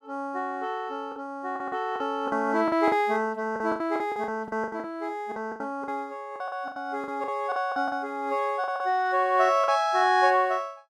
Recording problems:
packet loss; 12% of the sound replaced, filled with the last packet

